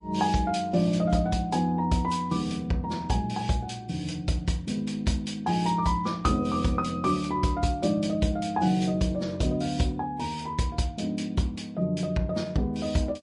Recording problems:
lossy codec; MP3, log-spectral distance 2 dB, nothing above 10.4 kHz

